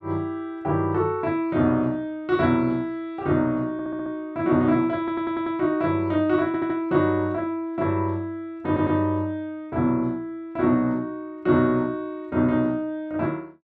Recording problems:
audio stuttering; 4 times, first at 3.5 s

